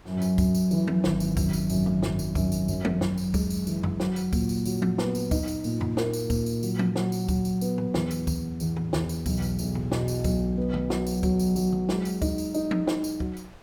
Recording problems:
wind noise; below 1.2 kHz, SNR 28 dB

